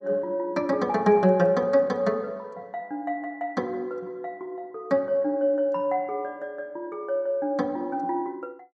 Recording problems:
none

